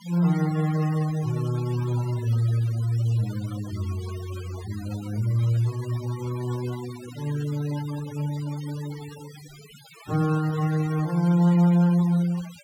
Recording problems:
noise reduction artefacts; signal-to-artefact ratio 18 dB

